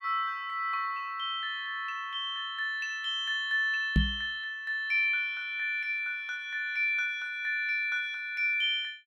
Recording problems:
microphone bump; at 4 s; peak +7 dB vs average level

